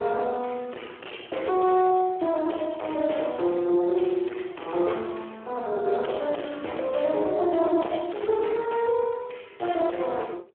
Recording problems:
phone line; 280 Hz to 3.3 kHz, Speex
distorted audio; soft clipping, signal-to-distortion ratio 9 dB

